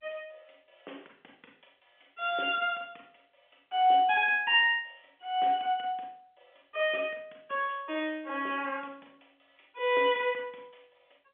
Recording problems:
phone line; 320 Hz to 3.4 kHz, G.711

